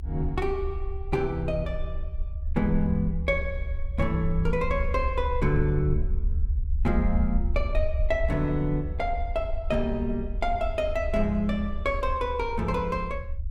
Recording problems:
low-frequency rumble; below 70 Hz, SNR 4 dB

